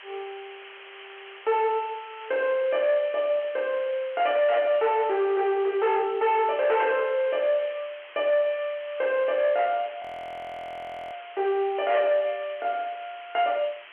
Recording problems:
telephone audio; 340 Hz to 3.6 kHz, G.711
distortion; hard clipping, uneven, signal-to-distortion ratio 11 dB
hiss; SNR 19 dB
frozen audio; at 10 s for 1 s

